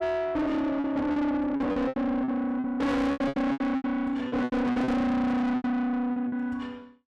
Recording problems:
distorted audio; soft clipping, signal-to-distortion ratio 6 dB
packet loss; 15% of the sound replaced, filled with repeated pitch periods

